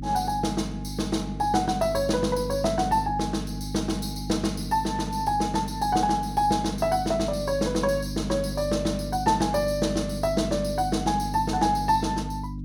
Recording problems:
hum; 50 Hz, harmonics up to 300 Hz, SNR 8 dB

